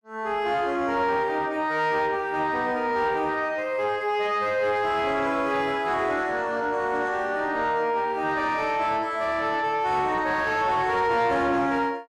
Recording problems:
distorted audio; soft clipping, signal-to-distortion ratio 11 dB

